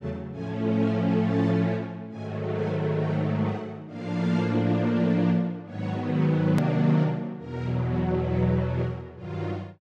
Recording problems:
click at an edit; at 6.5 s

